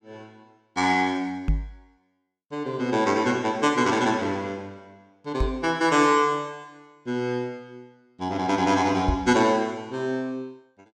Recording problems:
microphone thump; at 1.5 s, at 5.5 s and at 9 s; peak +3 dB vs average level

